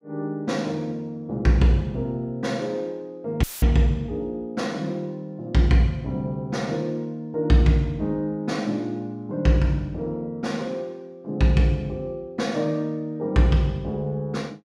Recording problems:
dropout; at 3.5 s; filled with static

